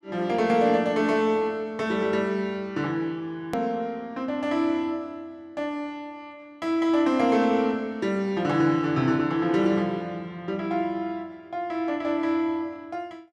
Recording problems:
edit click; at 3.5 s

